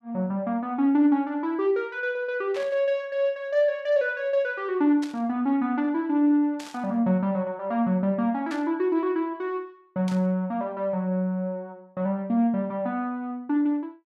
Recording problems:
static burst; 5 times, first at 2.5 s; peak -10 dB vs average level

